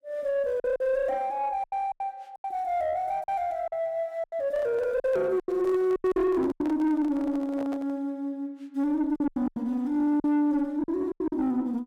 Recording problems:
distorted audio; soft clipping, signal-to-distortion ratio 10 dB
lost packets; 10% of the sound replaced, filled with silence
microphone handling noise; from 4.5 to 8 s; peak -8 dB vs average level

